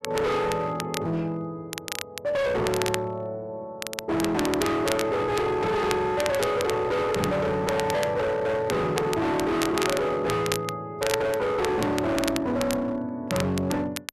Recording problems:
distorted audio; hard clipping, signal-to-distortion ratio 7 dB
crackling; vinyl, SNR 9 dB

